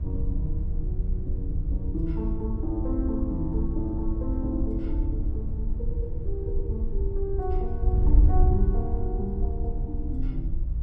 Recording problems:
wind noise; below 72 Hz, SNR -5 dB

